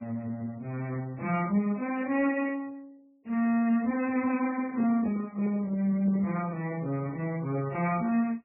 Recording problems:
lossy codec; Speex, then MP3, log-spectral distance 3 dB, nothing above 2.5 kHz
handling noise; from 4.5 to 6.5 s; peak -6 dB vs average level

